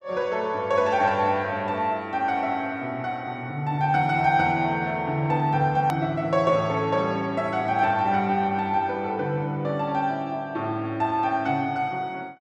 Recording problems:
edit click; at 6 s

